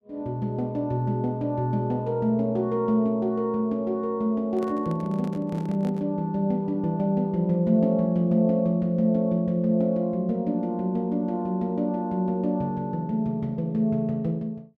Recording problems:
handling noise; from 4.5 to 6 s; peak -9 dB vs average level

